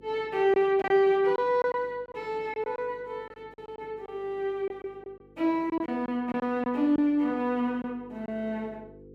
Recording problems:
hum; 50 Hz, harmonics up to 500 Hz, SNR 26 dB
lost packets; 7% of the sound replaced, filled with silence

